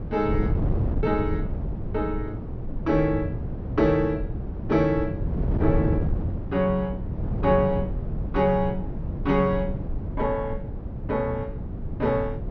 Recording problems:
treble cut off; nothing above 6.3 kHz
wind on the microphone; below 170 Hz, SNR 4 dB

